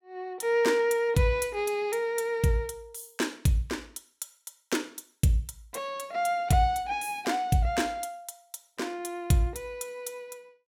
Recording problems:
none

